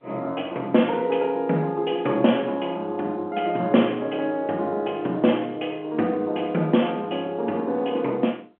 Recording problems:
telephone audio; 220 Hz to 3.2 kHz, G.711

